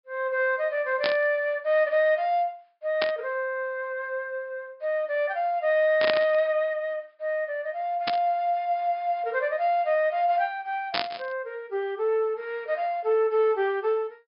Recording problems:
treble missing; nothing above 5.5 kHz
static burst; 5 times, first at 1 s; peak +4 dB vs average level

